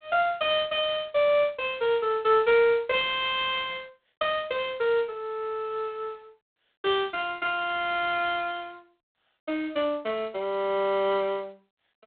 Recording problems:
telephone audio; 240 Hz to 3.6 kHz, G.726

